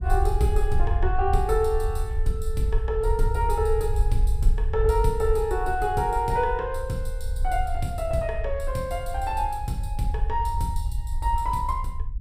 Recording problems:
rumble; below 62 Hz, SNR 2 dB

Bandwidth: 15.5 kHz